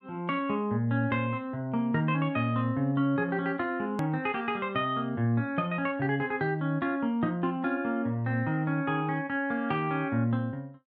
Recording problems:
click at an edit; at 4 s

